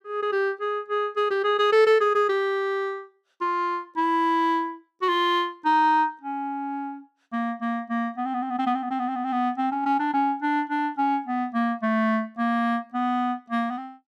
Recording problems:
none

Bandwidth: 15 kHz